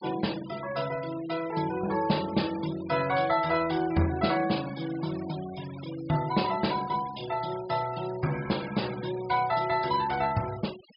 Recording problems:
low-pass filter; nothing above 5.2 kHz
denoising artefacts; signal-to-artefact ratio 16 dB

